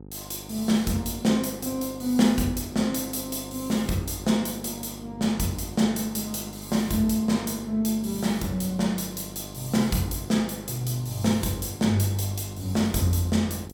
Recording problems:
electrical hum; 50 Hz, harmonics up to 950 Hz, SNR 16 dB

